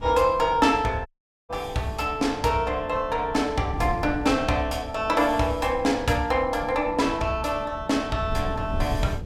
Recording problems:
wind on the microphone; below 150 Hz, SNR 13 dB
dropout; at 1 s

